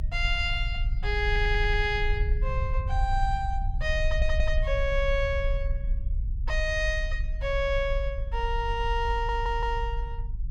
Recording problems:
rumble; below 54 Hz, strongest tone 30 Hz, SNR 2 dB
audio stuttering; at 1.5 s, at 4 s and at 9 s

